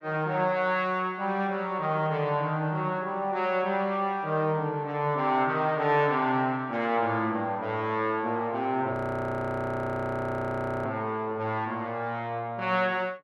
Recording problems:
frozen audio; at 9 s for 2 s

